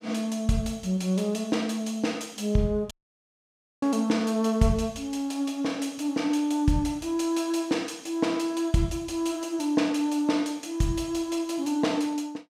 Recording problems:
audio cutting out; at 3 s for 1 s

